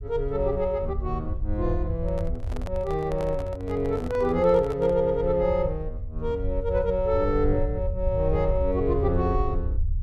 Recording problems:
low-frequency rumble; below 80 Hz, SNR 6 dB
microphone handling noise; from 2 to 5 s; peak -9 dB vs average level

